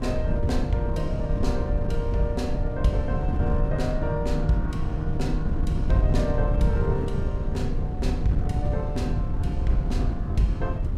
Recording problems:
wind on the microphone; below 110 Hz, SNR -1 dB

